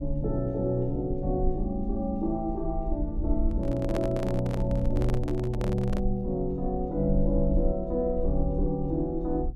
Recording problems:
low-frequency rumble; below 58 Hz, SNR 6 dB
microphone handling noise; from 3.5 to 6 s; peak -1 dB vs average level

